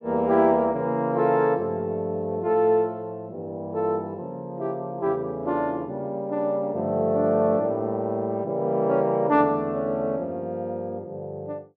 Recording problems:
none

